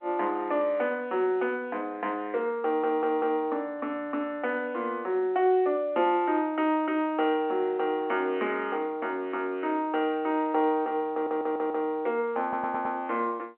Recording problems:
telephone audio; 260 Hz to 3.3 kHz, G.711
stutter; at 2.5 s, at 11 s and at 12 s

